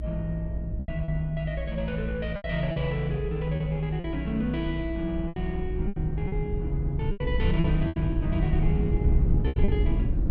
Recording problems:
rumble; below 96 Hz, SNR 0 dB
lost packets; 8% of the sound replaced, filled with repeated pitch periods

